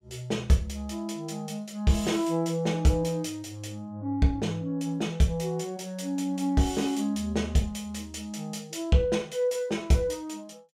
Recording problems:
none

